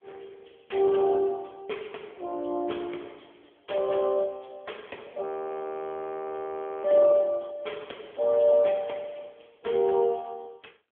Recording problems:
phone line; 300 Hz to 3.3 kHz, AMR-NB
audio freezing; at 5 s for 1.5 s

